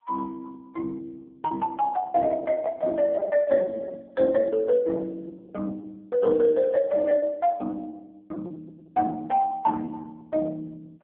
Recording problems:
phone line; 280 Hz to 3.4 kHz, AMR-NB
lost packets; 14% of the sound replaced, filled with repeated pitch periods

